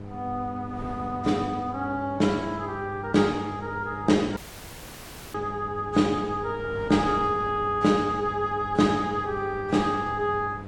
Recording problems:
lossy compression; AAC, log-spectral distance 2 dB
electrical hum; 50 Hz, harmonics up to 900 Hz, SNR 14 dB
wind on the microphone; below 510 Hz, SNR 18 dB
dropout; at 4.5 s for 1 s

